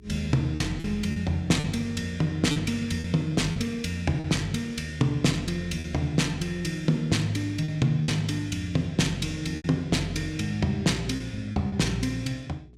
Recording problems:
hum; 60 Hz, harmonics up to 420 Hz, SNR 25 dB
lost packets; 5% of the sound replaced, filled with repeated pitch periods

